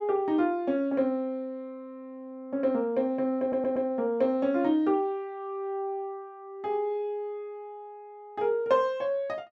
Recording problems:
audio stuttering; at 3.5 s

